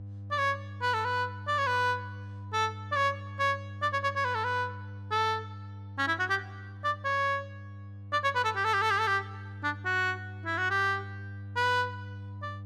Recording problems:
electrical hum; 50 Hz, harmonics up to 500 Hz, SNR 13 dB

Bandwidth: 14.5 kHz